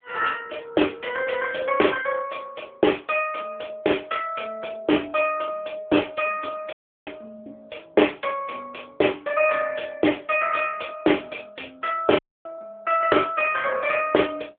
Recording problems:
telephone audio; 260 Hz to 3.4 kHz, AMR-NB
dropout; at 6.5 s and at 12 s

